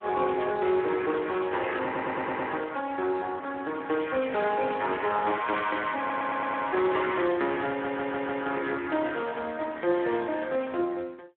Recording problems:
phone line; 280 Hz to 3.4 kHz, Speex
audio stuttering; at 2 s, at 6 s and at 7.5 s

